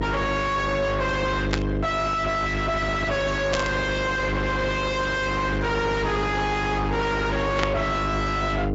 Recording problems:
low-pass filter; nothing above 7.3 kHz
codec artefacts; AAC, log-spectral distance 3 dB
distortion; soft clipping, signal-to-distortion ratio 4 dB
electrical hum; 50 Hz, harmonics up to 1.1 kHz, SNR 2 dB
static burst; at 1.5 s, at 3.5 s and at 7.5 s; peak 0 dB vs average level

